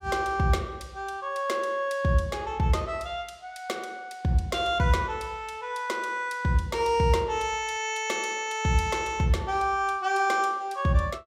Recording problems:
none

